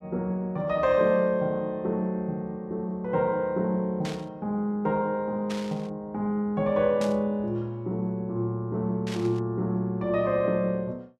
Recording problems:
burst of static; 4 times, first at 4 s; peak -7 dB vs average level

